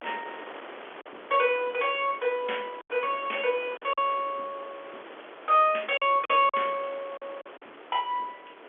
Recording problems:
telephone audio; 300 Hz to 3.4 kHz, G.711
wind on the microphone; below 1.9 kHz, SNR 17 dB
packet loss; 4% of the sound replaced, filled with silence

